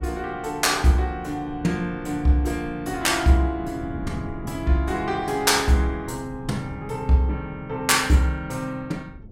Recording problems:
wind noise; below 210 Hz, SNR 16 dB

